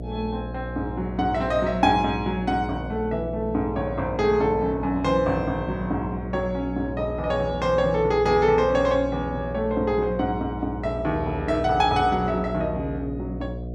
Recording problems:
hum; 60 Hz, harmonics up to 720 Hz, SNR 10 dB

